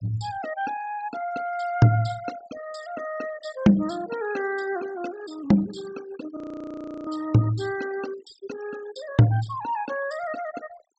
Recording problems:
treble cut off; nothing above 8 kHz
noise reduction artefacts; signal-to-artefact ratio 17 dB
audio freezing; at 6.5 s for 0.5 s

